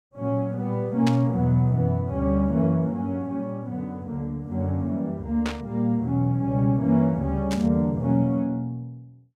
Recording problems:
static burst; at 1 s, at 5.5 s and at 7.5 s; peak -3 dB vs average level

